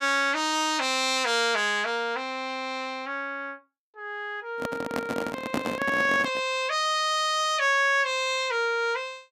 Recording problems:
handling noise; from 4.5 to 6.5 s; peak +1 dB vs average level

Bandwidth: 15.5 kHz